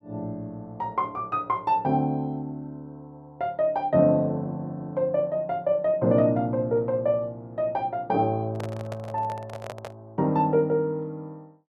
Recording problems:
microphone handling noise; from 8.5 to 10 s; peak -6 dB vs average level

